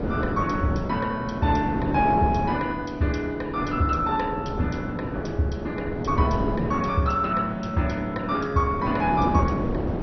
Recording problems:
lossy codec; MP2, log-spectral distance 2 dB, nothing above 6 kHz
wind noise; below 430 Hz, SNR 5 dB

